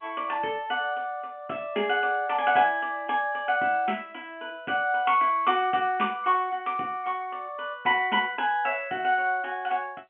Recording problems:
telephone audio; 170 Hz to 3.2 kHz, G.711

